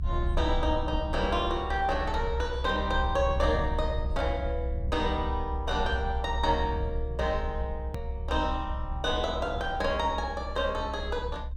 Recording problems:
low-frequency rumble; below 66 Hz, strongest tone 64 Hz, SNR 4 dB
hard cut with a click; at 8 s

